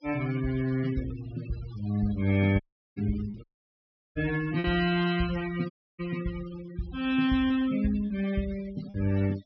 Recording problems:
low-pass filter; nothing above 5.5 kHz
noise reduction artefacts; signal-to-artefact ratio 15 dB
lost packets; 2% of the sound replaced, filled with repeated pitch periods
audio cutting out; at 2.5 s, at 3.5 s for 0.5 s and at 5.5 s

